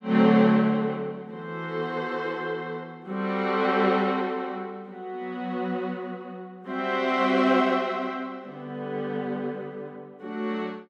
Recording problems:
none

